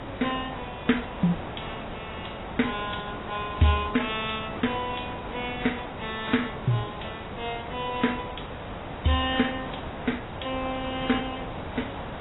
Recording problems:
codec artefacts; AAC, log-spectral distance 15 dB, nothing above 3.8 kHz
background hiss; SNR 8 dB

